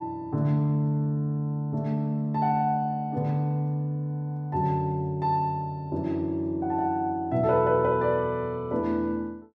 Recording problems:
none

